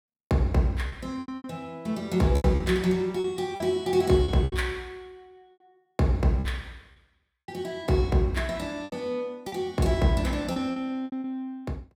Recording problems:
lost packets; 9% of the sound replaced, filled with repeated pitch periods

